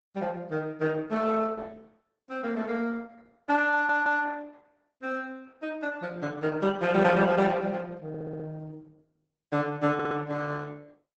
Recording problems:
lossy codec; Opus, log-spectral distance 3 dB, nothing above 8 kHz
audio stuttering; at 3.5 s, at 8 s and at 10 s

